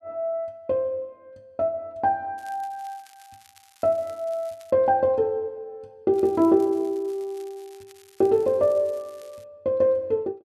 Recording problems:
crackle; from 2.5 to 4.5 s and from 6 to 9.5 s; loose cable, SNR 29 dB

